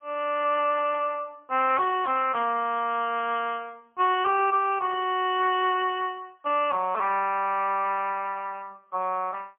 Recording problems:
telephone audio; 320 Hz to 3.2 kHz, AMR-NB, then MP3

